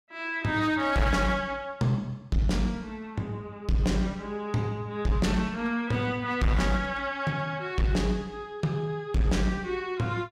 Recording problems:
distorted audio; hard clipping, uneven, signal-to-distortion ratio 11 dB

